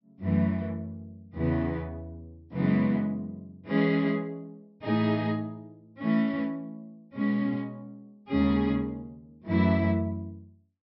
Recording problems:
treble missing; nothing above 5.6 kHz

